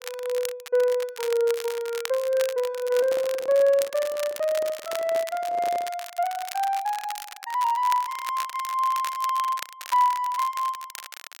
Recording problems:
crackle; vinyl, SNR 13 dB
microphone handling noise; from 3 to 6 s; peak -8 dB vs average level

